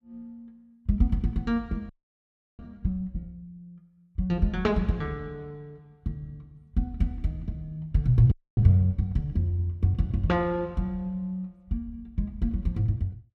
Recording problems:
frozen audio; at 2 s for 0.5 s and at 8.5 s

